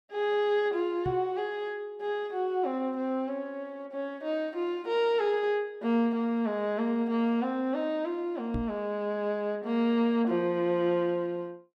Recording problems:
knock on the microphone; at 1 s and at 8.5 s; peak -1 dB vs average level

